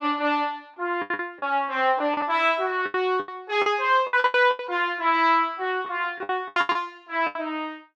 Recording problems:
lost packets; 14% of the sound replaced, filled with the last packet

